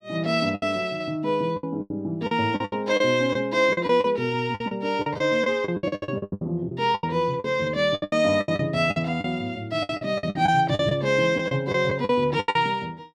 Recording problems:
lost packets; 16% of the sound replaced, filled with the last packet

